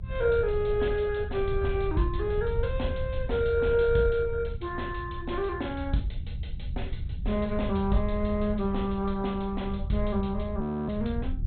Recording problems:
low-pass filter; nothing above 4.1 kHz
lossy compression; MP2, log-spectral distance 3 dB
hum; 60 Hz, harmonics up to 420 Hz, SNR 17 dB
low-frequency rumble; below 80 Hz, SNR 7 dB
audio freezing; at 11 s

